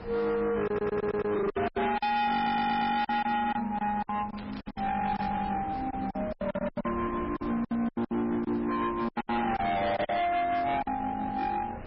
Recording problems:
codec artefacts; MP3, log-spectral distance 3 dB, nothing above 4.8 kHz
distorted audio; hard clipping, uneven, signal-to-distortion ratio 7 dB
wind on the microphone; below 1 kHz, SNR 14 dB
packet loss; 13% of the sound replaced, filled with silence
stutter; at 0.5 s and at 2.5 s
crackle; from 4.5 to 5.5 s; loose cable, SNR 20 dB

